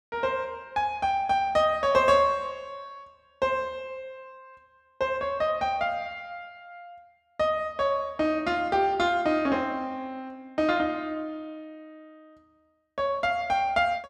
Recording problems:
none

